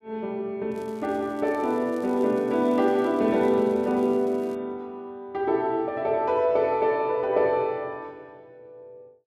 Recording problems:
crackling; from 0.5 to 4.5 s; loose cable, SNR 30 dB

